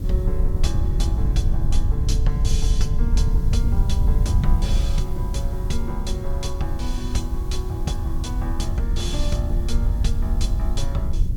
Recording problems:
hiss; SNR 20 dB
wind on the microphone; below 74 Hz, SNR -7 dB

